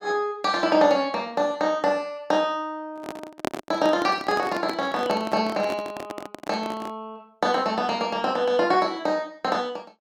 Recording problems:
handling noise; from 3 to 7 s; peak +1 dB vs average level

